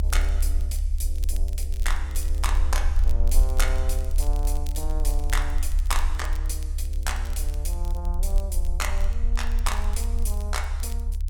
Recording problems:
low-frequency rumble; below 68 Hz, SNR -6 dB
crackle; vinyl, SNR 16 dB

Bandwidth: 18 kHz